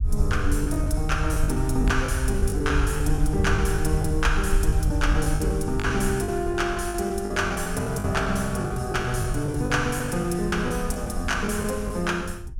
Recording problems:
rumble; below 74 Hz, SNR 4 dB
lost packets; 11% of the sound replaced, filled with the last packet

